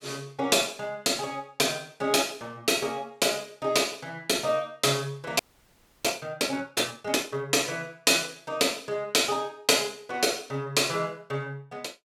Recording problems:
frozen audio; at 5.5 s for 0.5 s

